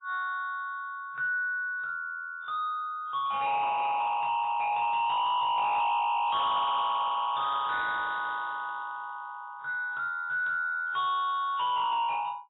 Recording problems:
codec artefacts; AAC, log-spectral distance 3 dB, nothing above 3.6 kHz
distortion; soft clipping, signal-to-distortion ratio 6 dB

